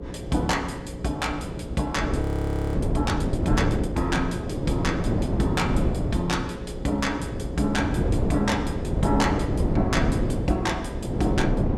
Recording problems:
hum; 60 Hz, harmonics up to 540 Hz, SNR 10 dB
wind on the microphone; below 330 Hz, SNR -1 dB
frozen audio; at 2 s for 0.5 s

